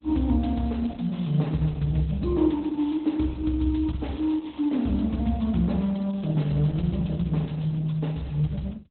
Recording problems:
lossy codec; Opus, log-spectral distance 4 dB, nothing above 4 kHz

